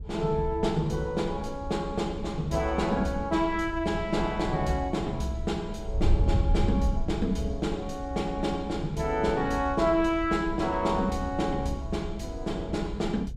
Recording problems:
wind on the microphone; below 80 Hz, SNR 7 dB

